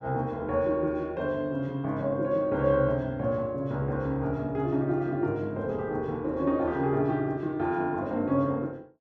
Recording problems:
none

